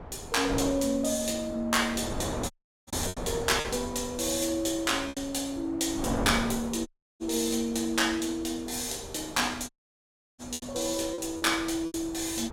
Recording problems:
wind noise; below 730 Hz, SNR 10 dB
lost packets; 5% of the sound replaced, filled with repeated pitch periods
audio cutting out; at 2.5 s, at 7 s and at 9.5 s for 0.5 s

